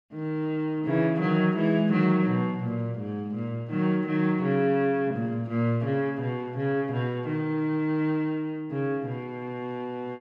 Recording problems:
none

